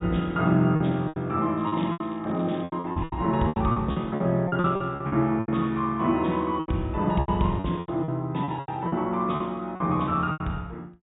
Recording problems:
treble missing; nothing above 4 kHz
lost packets; 15% of the sound replaced, filled with repeated pitch periods
crackling; from 1.5 to 2.5 s; loose cable, SNR 27 dB

